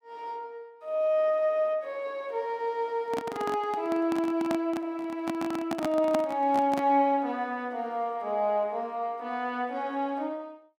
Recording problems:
handling noise; from 3 to 7 s; peak +2 dB vs average level

